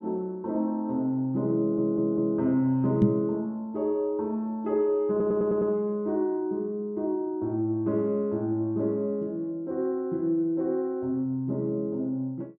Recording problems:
audio stuttering; at 1.5 s and at 5 s
knock on the microphone; at 3 s; peak +8 dB vs average level

